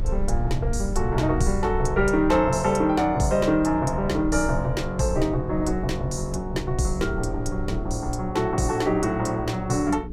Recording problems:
hum; 60 Hz, harmonics up to 420 Hz, SNR 16 dB
rumble; below 62 Hz, SNR 10 dB

